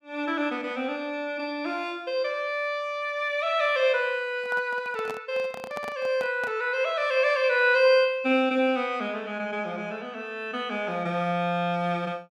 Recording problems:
handling noise; from 4.5 to 6.5 s; peak -8 dB vs average level

